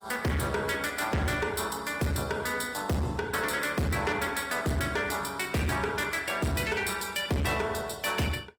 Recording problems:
lossy compression; Opus, log-spectral distance 5 dB, nothing above 18 kHz
distortion; hard clipping, uneven, signal-to-distortion ratio 8 dB

